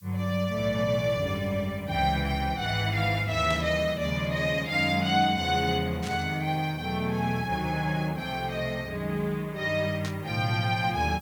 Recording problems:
background hiss; slope +3 dB per octave, SNR 27 dB
static burst; at 3.5 s, at 6 s and at 10 s; peak -7 dB vs average level

